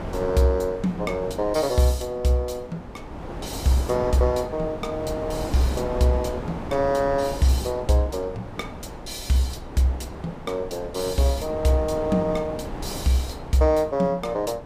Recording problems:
wind noise; below 690 Hz, SNR 11 dB

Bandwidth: 15.5 kHz